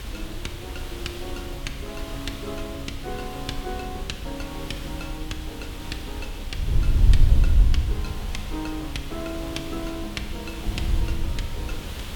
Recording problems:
background hiss; SNR 4 dB
wind on the microphone; below 74 Hz, SNR -6 dB

